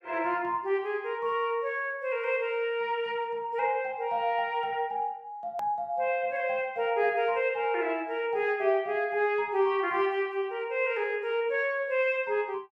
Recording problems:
hard cut with a click; at 5.5 s

